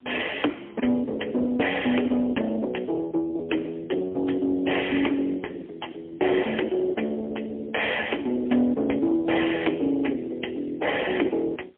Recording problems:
phone line; 260 Hz to 3.2 kHz, AMR-NB, then MP3
distorted audio; soft clipping, signal-to-distortion ratio 15 dB

